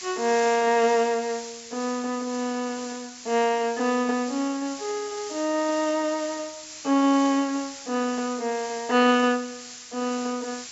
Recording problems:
low-pass filter; nothing above 8 kHz
hiss; slope +4 dB per octave, SNR 13 dB

